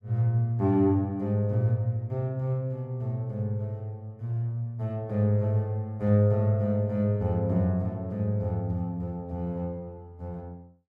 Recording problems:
none

